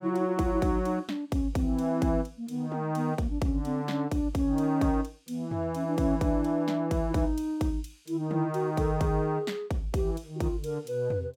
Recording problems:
none

